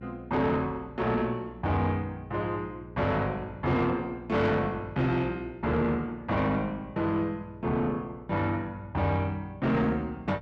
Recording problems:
distortion; soft clipping, signal-to-distortion ratio 12 dB
mains hum; 60 Hz, harmonics up to 540 Hz, SNR 19 dB

